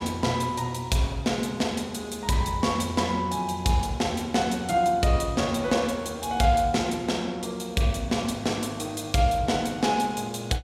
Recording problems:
none

